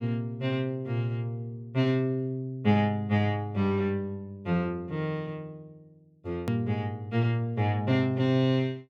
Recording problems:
hard cut with a click; at 6.5 s

